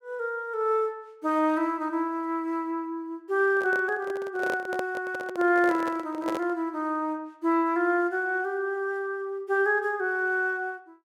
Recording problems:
handling noise; from 3.5 to 6.5 s; peak -2 dB vs average level

